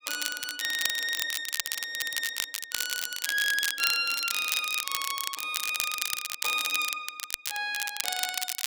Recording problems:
crackle; vinyl, SNR 1 dB

